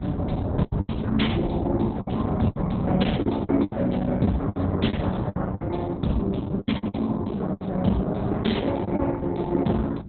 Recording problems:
codec artefacts; MP2, then Opus, log-spectral distance 3 dB, nothing above 4 kHz
electrical hum; 60 Hz, harmonics up to 840 Hz, SNR 23 dB
rumble; below 190 Hz, SNR 6 dB
lost packets; 11% of the sound replaced, filled with the last packet

